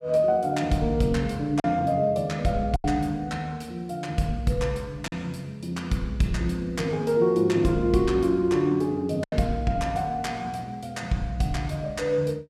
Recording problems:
packet loss; 1.9% of the sound replaced, filled with silence

